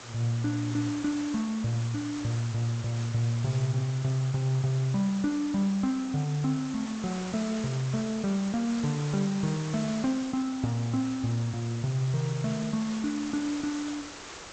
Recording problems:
lossy codec; G.722, log-spectral distance 11 dB
hiss; slope -2 dB per octave, SNR 13 dB

